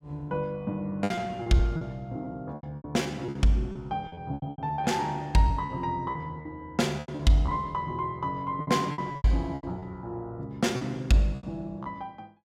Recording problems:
packet loss; 12% of the sound replaced, filled with repeated pitch periods

